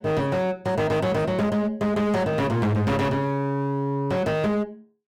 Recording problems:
distorted audio; hard clipping, signal-to-distortion ratio 6 dB

